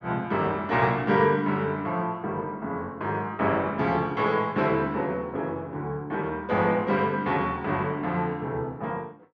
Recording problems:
none

